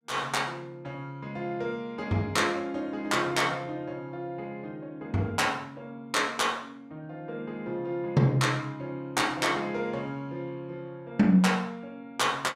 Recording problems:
none

